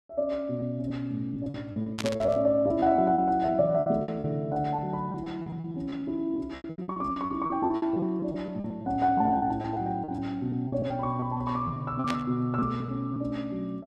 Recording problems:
lost packets; 16% of the sound replaced, filled with repeated pitch periods
burst of static; at 2 s and at 12 s; peak 0 dB vs average level

